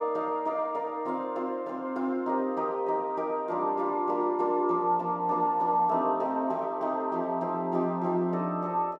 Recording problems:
none

